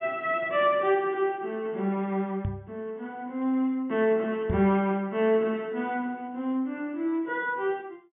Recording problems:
treble missing; nothing above 3.5 kHz
knock on the microphone; at 2.5 s and at 4.5 s; peak +1 dB vs average level

